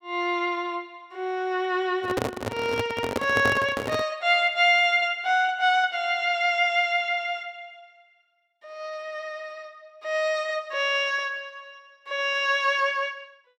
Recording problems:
handling noise; from 2 to 4 s; peak +1 dB vs average level

